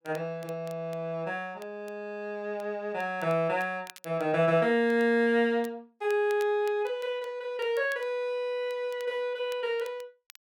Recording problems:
crackle; vinyl, SNR 25 dB

